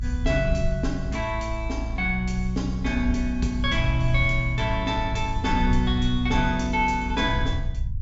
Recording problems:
treble missing; nothing above 8 kHz
rumble; below 70 Hz, SNR 5 dB

